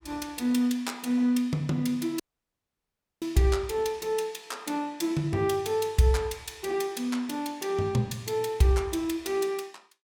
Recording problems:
audio cutting out; at 2 s for 1 s

